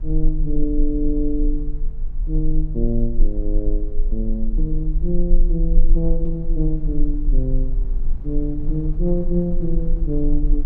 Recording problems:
rumble; below 32 Hz, strongest tone 20 Hz, SNR 0 dB
wind on the microphone; below 120 Hz, SNR 13 dB

